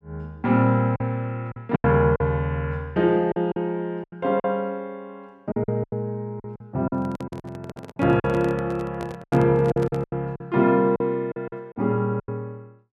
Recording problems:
lost packets; 11% of the sound replaced, filled with silence
microphone handling noise; from 7 to 10 s; peak -5 dB vs average level

